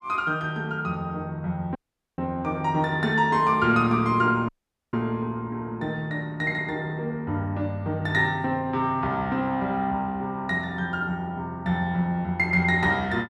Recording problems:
dropout; at 2 s and at 4.5 s

